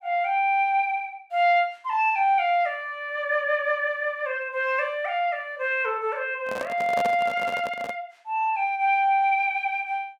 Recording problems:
microphone handling noise; from 6.5 to 8 s; peak -3 dB vs average level

